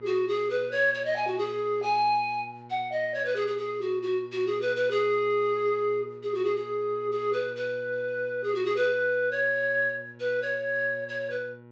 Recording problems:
treble missing; nothing above 8 kHz
hum; 60 Hz, harmonics up to 1.9 kHz, SNR 22 dB

